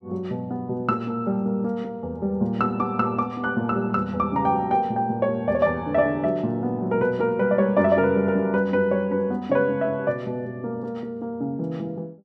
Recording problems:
none

